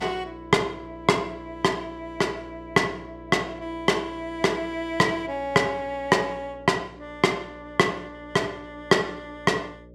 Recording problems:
mains hum; 60 Hz, harmonics up to 600 Hz, SNR 21 dB

